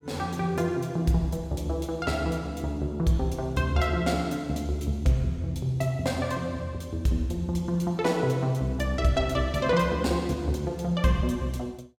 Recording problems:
none

